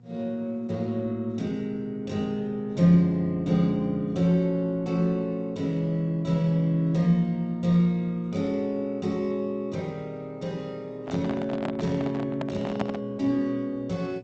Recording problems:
lossy codec; Opus, then G.722, log-spectral distance 2 dB, nothing above 16 kHz
hum; 60 Hz, harmonics up to 720 Hz, SNR 24 dB
microphone handling noise; from 11 to 13 s; peak 0 dB vs average level

